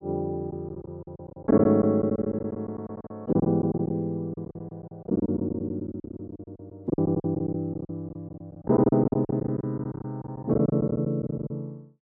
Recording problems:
lost packets; 17% of the sound replaced, filled with silence

